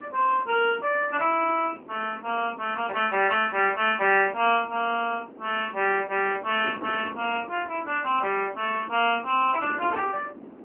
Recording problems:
telephone audio; 240 Hz to 3.1 kHz, AMR-NB
wind noise; below 540 Hz, SNR 18 dB

